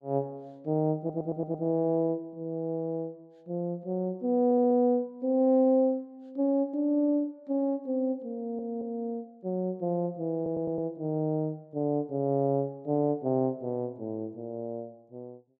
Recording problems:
audio stuttering; 4 times, first at 1 s

